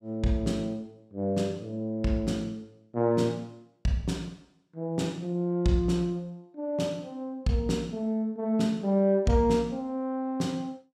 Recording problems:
none

